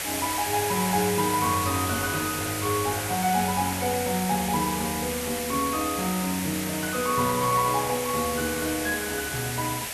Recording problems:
background hiss; SNR 3 dB

